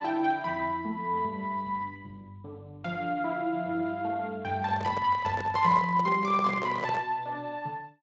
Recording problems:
codec artefacts; Speex, log-spectral distance 2 dB, nothing above 7.3 kHz
handling noise; from 4.5 to 7 s; peak -3 dB vs average level

